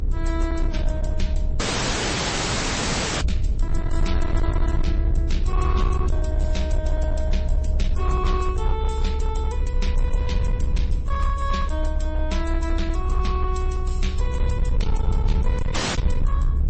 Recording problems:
lossy compression; MP3, then MP3, log-spectral distance 3 dB, nothing above 8.2 kHz
distorted audio; hard clipping, signal-to-distortion ratio 10 dB
hum; 60 Hz, harmonics up to 480 Hz, SNR 11 dB
rumble; below 68 Hz, SNR -6 dB
dropout; at 1.5 s for 1.5 s and at 16 s

